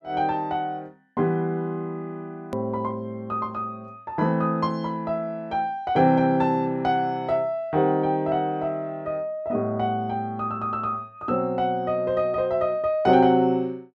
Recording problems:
edit click; at 2.5 s

